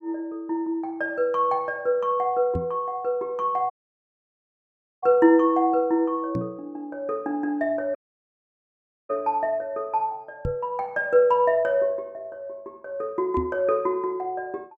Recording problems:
microphone thump; 4 times, first at 2.5 s; peak -1 dB vs average level
dropout; at 3.5 s for 1.5 s and at 8 s for 1 s

